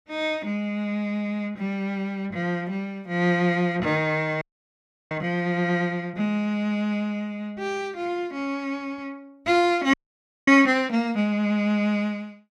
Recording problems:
frozen audio; at 4.5 s for 0.5 s and at 10 s for 0.5 s

